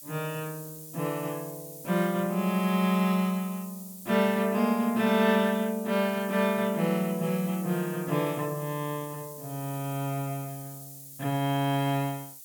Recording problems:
background hiss; SNR 15 dB

